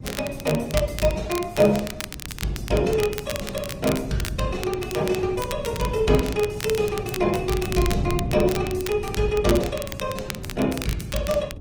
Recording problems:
lossy codec; Opus, log-spectral distance 3 dB
wind noise; below 200 Hz, SNR 11 dB
crackle; vinyl, SNR 11 dB

